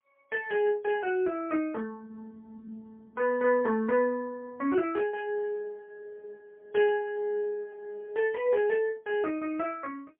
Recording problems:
telephone audio; 260 Hz to 3.3 kHz, AMR-NB, then MP3

